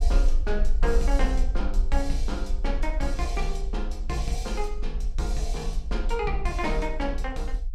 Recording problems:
rumble; below 44 Hz, strongest tone 22 Hz, SNR -2 dB

